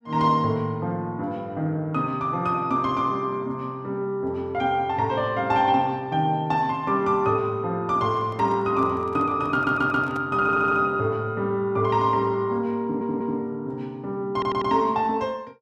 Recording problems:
microphone handling noise; from 8 to 10 s; peak -11 dB vs average level
stutter; 4 times, first at 9.5 s

